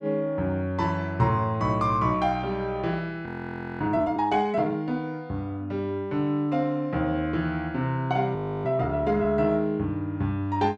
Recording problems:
frozen audio; at 3.5 s for 0.5 s and at 8.5 s

